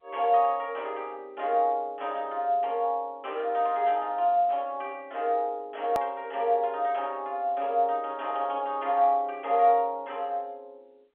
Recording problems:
phone line; 320 Hz to 3.7 kHz, G.711
click at an edit; at 6 s

